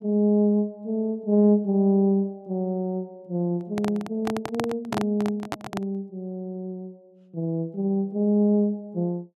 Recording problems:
handling noise; from 3.5 to 6 s; peak +1 dB vs average level

